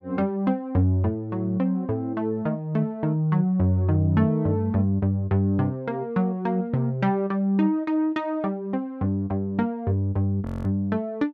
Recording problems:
audio freezing; at 10 s

